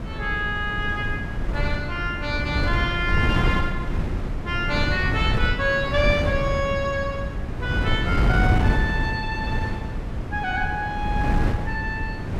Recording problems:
wind on the microphone; below 200 Hz, SNR 0 dB

